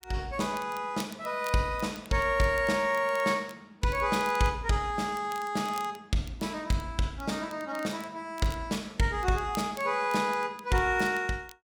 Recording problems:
crackling; vinyl, SNR 21 dB

